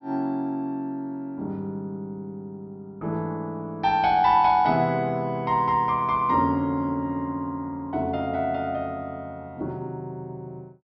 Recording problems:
treble missing; nothing above 5.7 kHz

